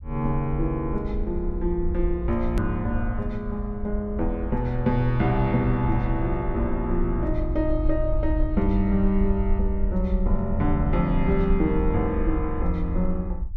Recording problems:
low-frequency rumble; below 58 Hz, SNR 5 dB
click at an edit; at 2.5 s

